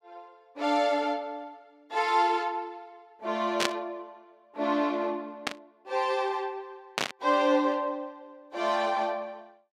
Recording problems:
burst of static; at 3.5 s, at 5.5 s and at 7 s; peak +5 dB vs average level

